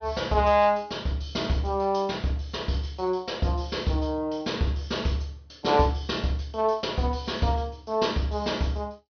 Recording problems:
treble cut off; nothing above 6.2 kHz

